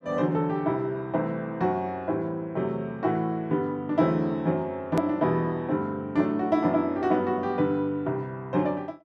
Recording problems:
edit click; at 5 s

